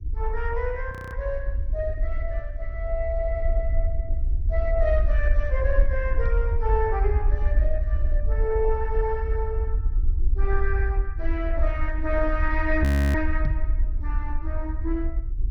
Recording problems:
lossy codec; MP2, log-spectral distance 2 dB, nothing above 19.5 kHz
rumble; below 60 Hz, SNR -3 dB
audio freezing; at 1 s and at 13 s
microphone bump; at 6.5 s and at 13 s; peak +5 dB vs average level

